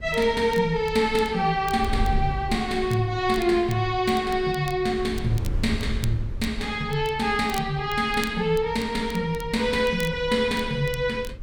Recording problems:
wind noise; below 88 Hz, SNR 12 dB
crackle; vinyl, SNR 20 dB

